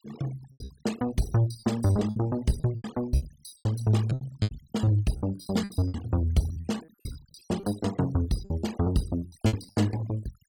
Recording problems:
denoising artefacts; signal-to-artefact ratio 18 dB
lost packets; 15% of the sound replaced, filled with repeated pitch periods

